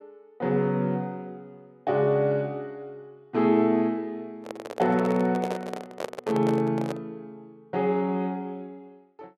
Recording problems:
microphone handling noise; from 4.5 to 7 s; peak -2 dB vs average level

